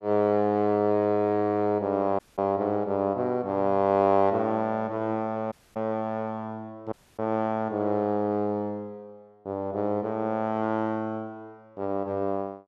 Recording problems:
dropout; at 2 s, at 5.5 s and at 7 s

